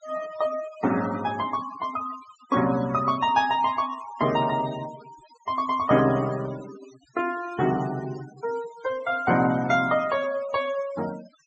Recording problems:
treble cut off; nothing above 8 kHz
noise reduction artefacts; signal-to-artefact ratio 16 dB

